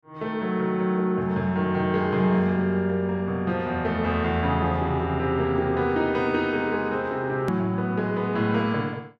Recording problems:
click at an edit; at 7.5 s

